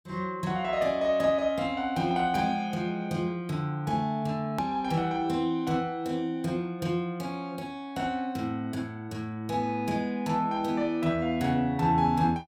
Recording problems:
click at an edit; at 4.5 s

